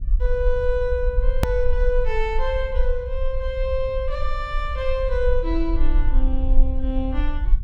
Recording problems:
rumble; below 48 Hz, strongest tone 18 Hz, SNR 0 dB
edit click; at 1.5 s

